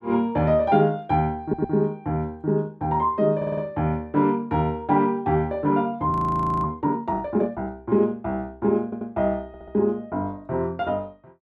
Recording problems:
stutter; 4 times, first at 1.5 s
audio freezing; at 6 s for 0.5 s

